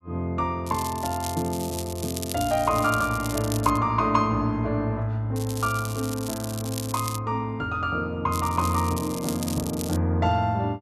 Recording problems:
crackle; from 0.5 to 4 s, from 5.5 to 7 s and from 8.5 to 10 s; loose cable, SNR 10 dB

